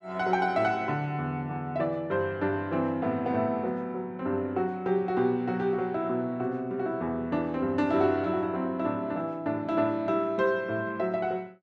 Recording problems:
none

